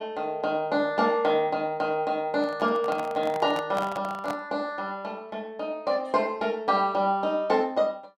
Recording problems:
handling noise; from 2.5 to 4.5 s; peak -2 dB vs average level

